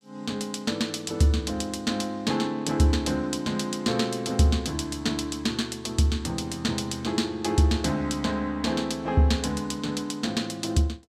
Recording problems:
none

